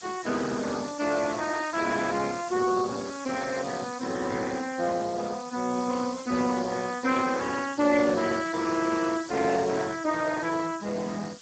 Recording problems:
lossy compression; Speex, log-spectral distance 12 dB, nothing above 7.3 kHz
hiss; slope +3 dB per octave, SNR 16 dB

